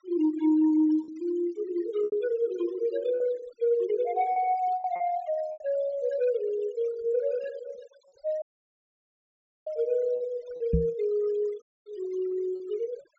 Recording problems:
treble cut off; nothing above 7.7 kHz
denoising artefacts; signal-to-artefact ratio 21 dB
lost packets; 4% of the sound replaced, filled with repeated pitch periods
dropout; at 8.5 s for 1 s and at 12 s
microphone thump; at 11 s; peak +6 dB vs average level

